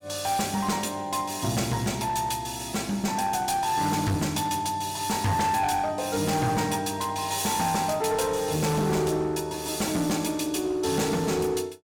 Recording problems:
distortion; hard clipping, uneven, signal-to-distortion ratio 10 dB

